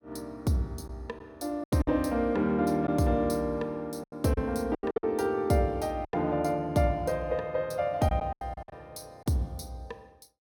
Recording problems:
lost packets; 8% of the sound replaced, filled with silence

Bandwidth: 17.5 kHz